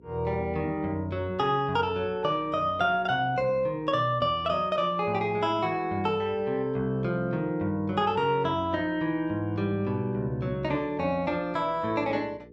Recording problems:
electrical hum; 60 Hz, harmonics up to 480 Hz, SNR 24 dB

